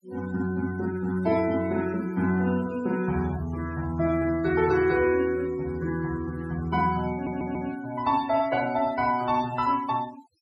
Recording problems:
noise reduction artefacts; signal-to-artefact ratio 19 dB
stutter; at 7 s

